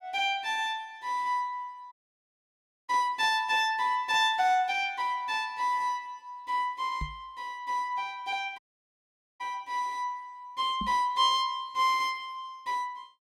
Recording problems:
dropout; at 2 s for 1 s and at 8.5 s for 1 s
microphone bump; at 7 s and at 11 s; peak -3 dB vs average level

